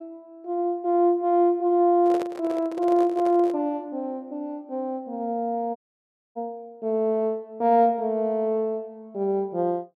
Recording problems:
microphone handling noise; from 2 to 3.5 s; peak -5 dB vs average level
audio cutting out; at 6 s for 0.5 s

